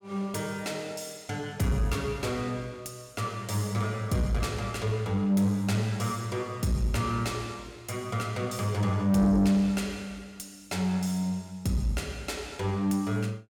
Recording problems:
distorted audio; soft clipping, signal-to-distortion ratio 10 dB

